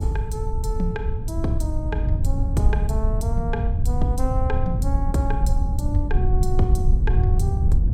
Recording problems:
low-frequency rumble; below 86 Hz, SNR -5 dB

